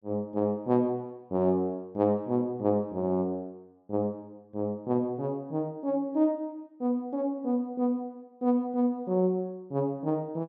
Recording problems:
none

